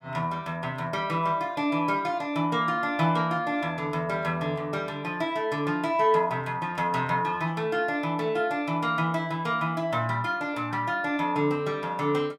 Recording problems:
none

